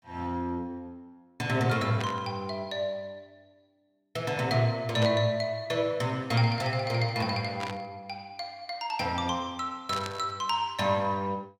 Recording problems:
burst of static; 4 times, first at 2 s; peak -2 dB vs average level

